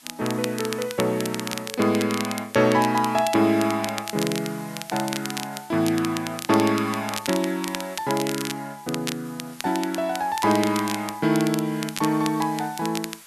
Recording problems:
hiss; SNR 20 dB
crackle; vinyl, SNR 10 dB

